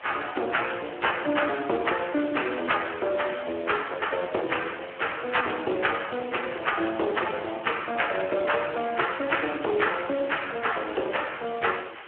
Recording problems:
telephone audio; 300 Hz to 3.3 kHz, Speex
hiss; SNR 15 dB

